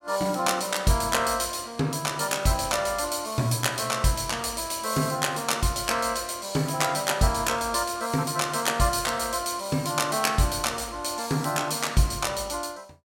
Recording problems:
none

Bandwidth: 16.5 kHz